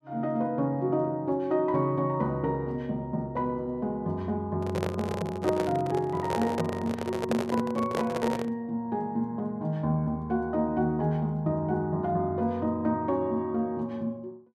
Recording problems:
handling noise; from 4.5 to 8.5 s; peak +4 dB vs average level

